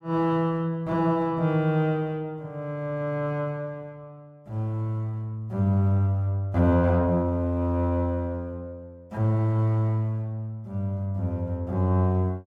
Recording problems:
none

